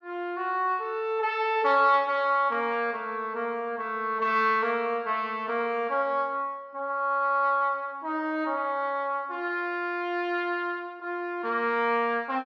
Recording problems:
none

